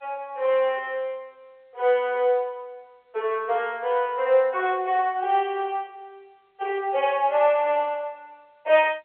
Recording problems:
telephone audio; 340 Hz to 3.4 kHz, G.711

